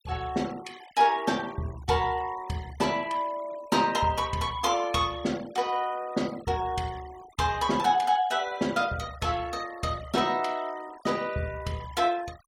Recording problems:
noise reduction artefacts; signal-to-artefact ratio 21 dB

